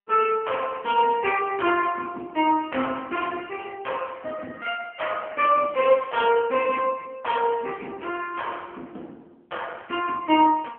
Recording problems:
telephone audio; 220 Hz to 3.3 kHz, AMR-NB

